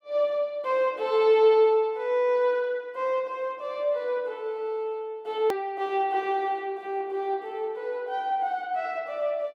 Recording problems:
click at an edit; at 5.5 s

